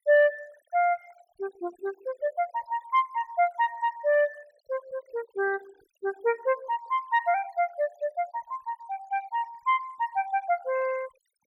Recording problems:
noise reduction artefacts; signal-to-artefact ratio 23 dB

